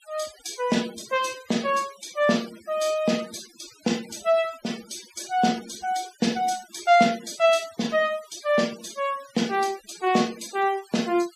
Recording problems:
denoising artefacts; signal-to-artefact ratio 18 dB

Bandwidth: 14.5 kHz